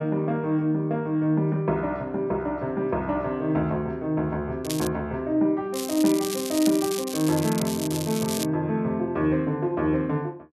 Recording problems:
crackle; at 4.5 s and from 5.5 to 8.5 s; loose cable, SNR 8 dB

